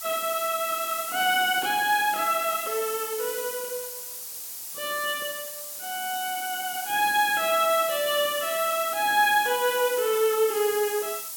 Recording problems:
hiss; SNR 8 dB

